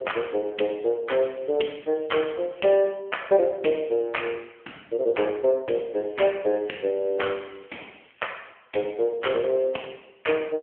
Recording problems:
phone line; 260 Hz to 3.2 kHz, AMR-NB
crackle; from 1 to 3 s and from 6 to 8.5 s; loose cable, SNR 30 dB

